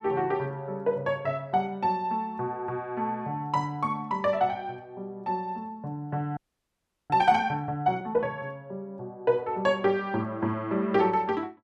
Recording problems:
frozen audio; at 6.5 s for 0.5 s

